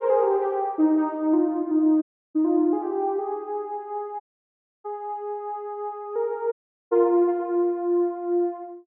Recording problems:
dropout; at 2 s, at 4 s for 0.5 s and at 6.5 s

